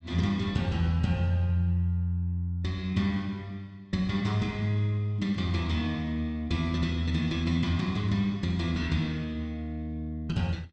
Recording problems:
none

